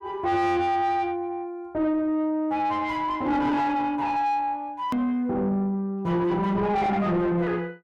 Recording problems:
distorted audio; soft clipping, signal-to-distortion ratio 6 dB
click at an edit; at 5 s

